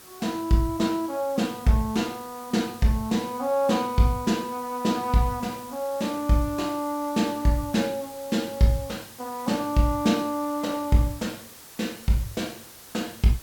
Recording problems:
hiss; slope -1 dB per octave, SNR 18 dB

